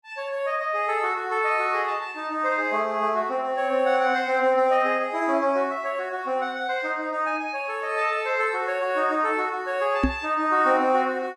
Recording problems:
microphone thump; at 10 s; peak +5 dB vs average level

